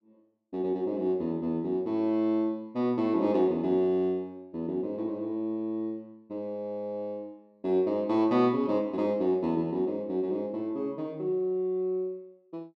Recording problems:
none

